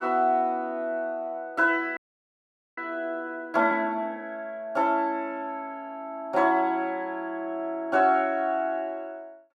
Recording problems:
frozen audio; at 2 s for 1 s

